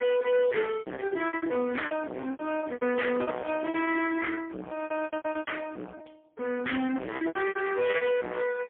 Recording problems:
telephone audio; 190 Hz to 3.4 kHz, AMR-NB, then MP3
distortion; hard clipping, signal-to-distortion ratio 4 dB
lost packets; 18% of the sound replaced, filled with repeated pitch periods

